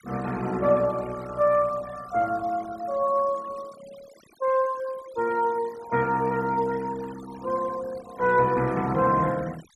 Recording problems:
noise reduction artefacts; signal-to-artefact ratio 20 dB

